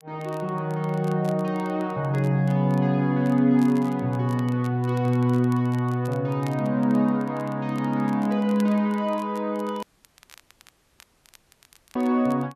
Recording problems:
crackling; vinyl, SNR 28 dB
dropout; at 10 s for 2 s

